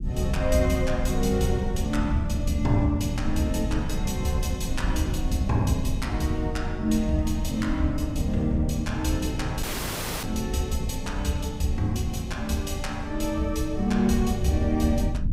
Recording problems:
low-frequency rumble; below 130 Hz, SNR 4 dB
audio cutting out; at 9.5 s for 0.5 s

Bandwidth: 15.5 kHz